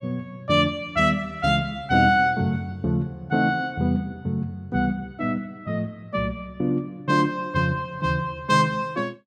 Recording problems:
none

